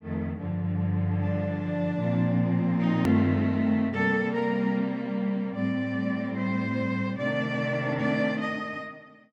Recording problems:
hard cut with a click; at 3 s

